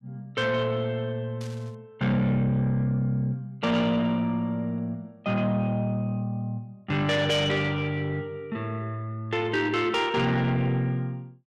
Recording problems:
distorted audio; soft clipping, signal-to-distortion ratio 12 dB
static burst; at 1.5 s and at 10 s; peak -12 dB vs average level

